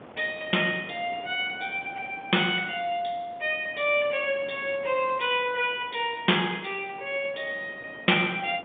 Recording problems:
telephone audio; 190 Hz to 3.6 kHz, G.711
wind noise; below 950 Hz, SNR 21 dB

